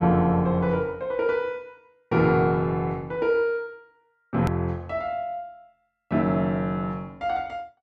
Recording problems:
hard cut with a click; at 4.5 s

